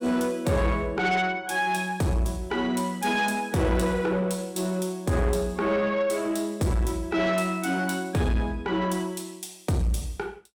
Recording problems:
distorted audio; soft clipping, signal-to-distortion ratio 11 dB

